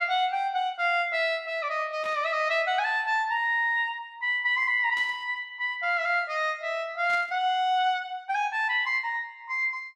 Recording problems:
burst of static; at 2 s, at 5 s and at 7 s; peak -13 dB vs average level

